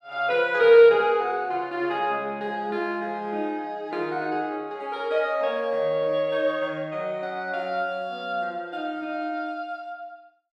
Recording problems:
none

